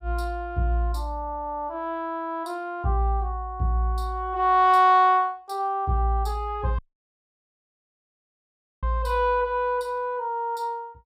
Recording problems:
dropout; at 7 s for 2 s

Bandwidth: 15.5 kHz